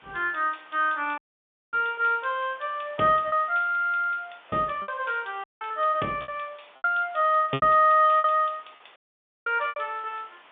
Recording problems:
phone line; 260 Hz to 3.5 kHz, G.711
hiss; SNR 27 dB
lost packets; 6% of the sound replaced, filled with repeated pitch periods
dropout; at 1 s for 0.5 s, at 5.5 s and at 9 s for 0.5 s

